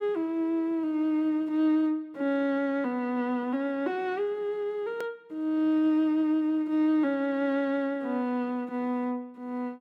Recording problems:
hard cut with a click; at 5 s

